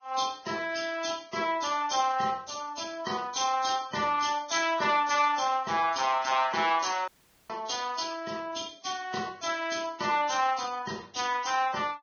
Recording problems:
lossy compression; Vorbis, log-spectral distance 7 dB, nothing above 6.3 kHz
audio cutting out; at 7 s

